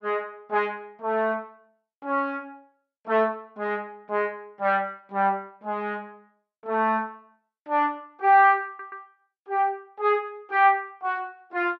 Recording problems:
stutter; at 8.5 s

